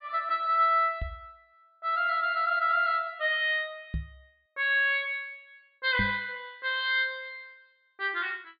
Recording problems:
treble missing; nothing above 4.8 kHz
microphone thump; at 1 s, at 4 s and at 6 s; peak -1 dB vs average level

